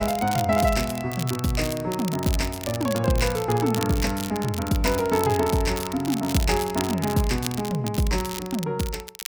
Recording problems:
crackle; vinyl, SNR 10 dB

